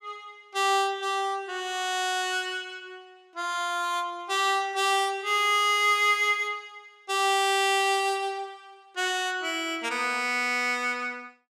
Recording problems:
none

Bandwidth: 15 kHz